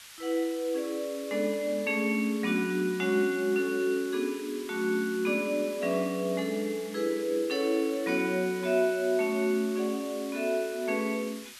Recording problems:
background hiss; SNR 16 dB

